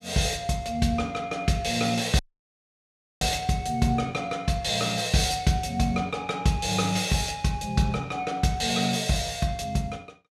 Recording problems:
audio cutting out; at 2 s for 1 s

